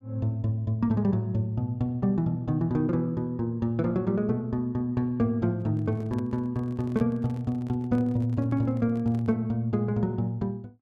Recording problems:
handling noise; from 5.5 to 9.5 s; peak -10 dB vs average level

